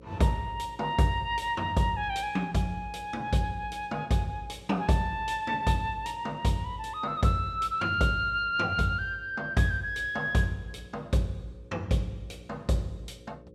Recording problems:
hum; 60 Hz, harmonics up to 540 Hz, SNR 24 dB

